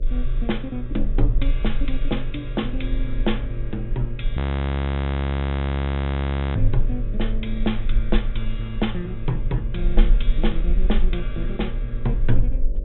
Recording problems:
treble cut off; nothing above 3.9 kHz
hum; 50 Hz, harmonics up to 900 Hz, SNR 12 dB
low-frequency rumble; below 40 Hz, strongest tone 18 Hz, SNR -2 dB
audio freezing; at 4.5 s for 2 s

